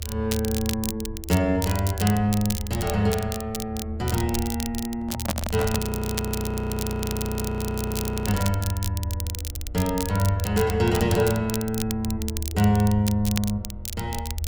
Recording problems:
electrical hum; 60 Hz, harmonics up to 1.6 kHz, SNR 28 dB
low-frequency rumble; below 82 Hz, strongest tone 78 Hz, SNR 8 dB
crackling; vinyl, SNR 8 dB
microphone handling noise; from 5 to 8.5 s; peak +2 dB vs average level
frozen audio; at 6 s for 2.5 s

